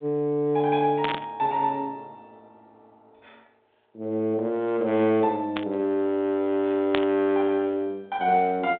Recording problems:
telephone audio; 170 Hz to 3.7 kHz, G.726
static burst; at 1 s, at 5.5 s and at 7 s; peak +1 dB vs average level

